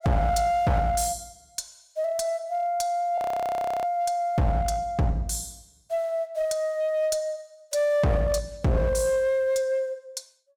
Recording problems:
distorted audio; hard clipping, uneven, signal-to-distortion ratio 8 dB
audio freezing; at 3 s for 0.5 s

